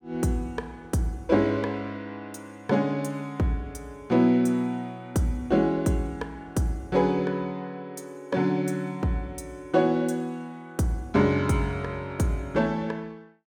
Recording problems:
none

